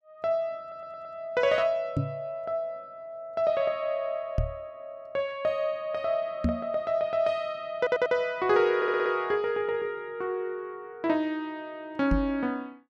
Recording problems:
stutter; at 0.5 s, at 8 s and at 9 s
microphone thump; 4 times, first at 2 s; peak +6 dB vs average level

